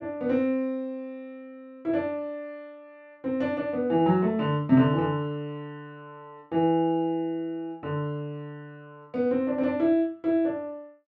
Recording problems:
none

